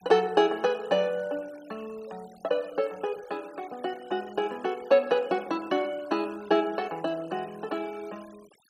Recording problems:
noise reduction artefacts; signal-to-artefact ratio 24 dB

